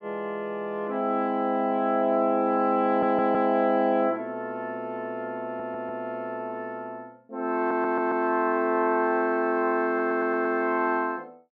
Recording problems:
stutter; 4 times, first at 3 s

